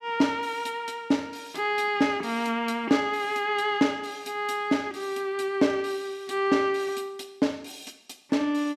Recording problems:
none

